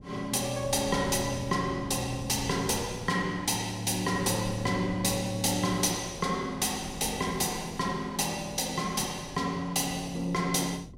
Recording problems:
wind on the microphone; below 240 Hz, SNR 16 dB

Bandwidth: 16 kHz